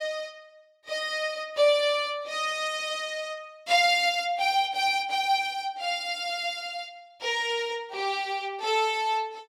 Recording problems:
none

